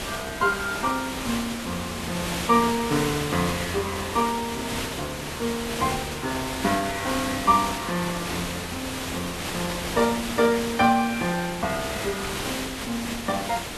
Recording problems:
lossy compression; Vorbis, log-spectral distance 2 dB
hiss; slope -3 dB per octave, SNR 4 dB

